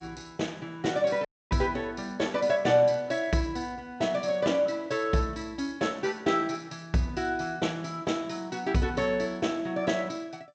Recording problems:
lossy codec; G.722, log-spectral distance 3 dB
audio cutting out; at 1.5 s

